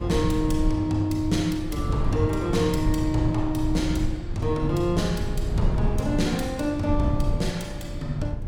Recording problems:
rumble; below 130 Hz, SNR 4 dB

